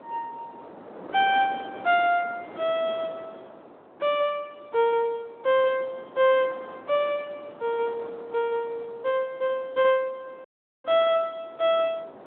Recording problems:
telephone audio; 220 Hz to 3.5 kHz, Speex
wind noise; below 860 Hz, SNR 19 dB
audio cutting out; at 10 s

